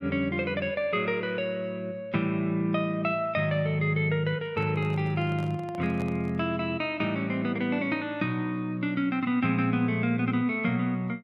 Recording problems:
handling noise; from 4.5 to 6.5 s; peak -9 dB vs average level

